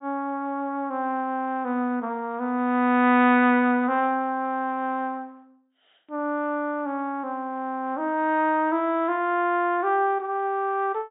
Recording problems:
treble cut off; nothing above 4 kHz

